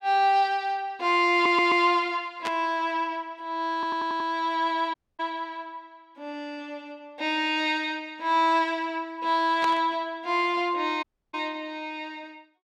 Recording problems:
audio stuttering; at 1.5 s and at 3.5 s
burst of static; at 2.5 s and at 9.5 s; peak -3 dB vs average level
audio cutting out; at 5 s and at 11 s

